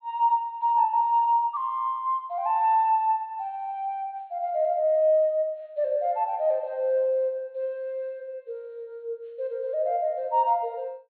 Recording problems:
treble missing; nothing above 4.3 kHz

